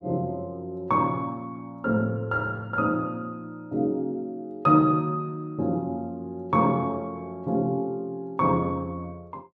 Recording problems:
none

